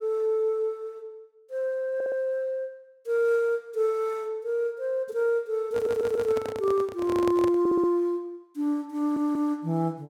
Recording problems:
stutter; 4 times, first at 2 s
handling noise; from 5.5 to 8 s; peak -2 dB vs average level

